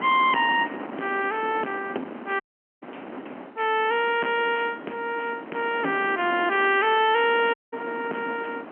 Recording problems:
telephone audio; 220 Hz to 3.2 kHz, G.711
distortion; soft clipping, signal-to-distortion ratio 8 dB
wind noise; below 1.1 kHz, SNR 14 dB
audio cutting out; at 2.5 s and at 7.5 s

